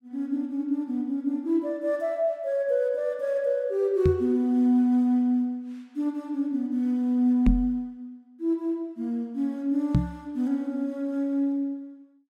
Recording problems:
microphone thump; at 4 s, at 7.5 s and at 10 s; peak +8 dB vs average level

